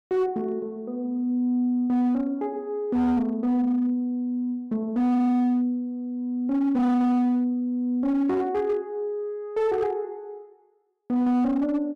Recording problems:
distortion; hard clipping, signal-to-distortion ratio 12 dB

